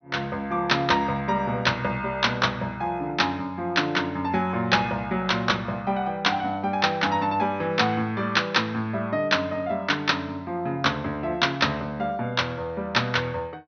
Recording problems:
low-pass filter; nothing above 6.2 kHz

